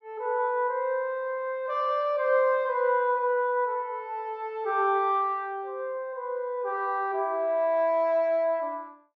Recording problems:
none

